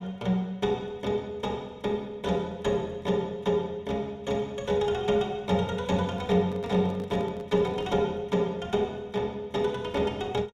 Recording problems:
microphone handling noise; from 6 to 8 s; peak -11 dB vs average level

